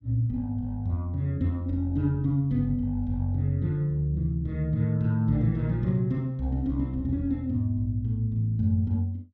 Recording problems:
none

